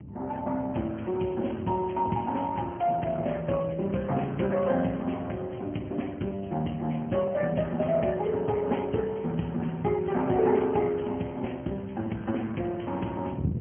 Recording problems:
phone line; 110 Hz to 3.2 kHz, AMR-NB
wind on the microphone; below 230 Hz, SNR 14 dB

